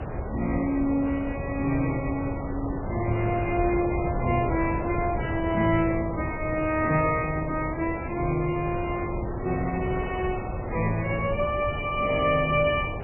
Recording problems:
codec artefacts; MP3, log-spectral distance 5 dB, nothing above 2.9 kHz
wind noise; below 550 Hz, SNR 5 dB

